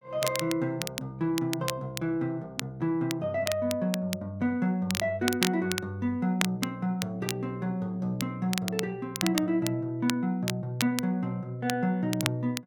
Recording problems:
crackling; vinyl, SNR 6 dB

